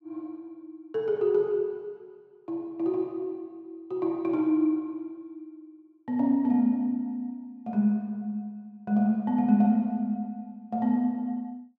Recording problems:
none

